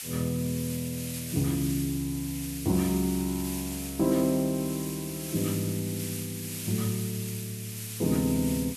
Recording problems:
hiss; SNR 7 dB

